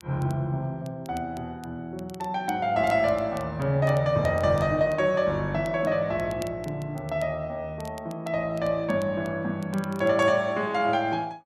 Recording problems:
crackle; vinyl, SNR 25 dB

